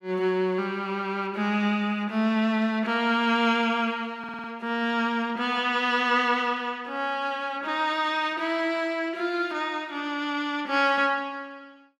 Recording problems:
audio stuttering; at 4 s

